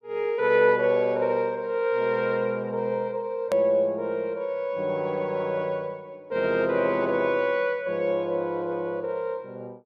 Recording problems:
edit click; at 3.5 s

